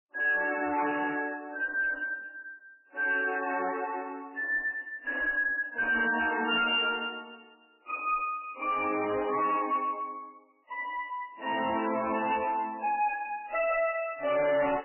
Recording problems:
lossy codec; AAC, then MP3, log-spectral distance 5 dB, nothing above 2.8 kHz
distorted audio; soft clipping, signal-to-distortion ratio 9 dB

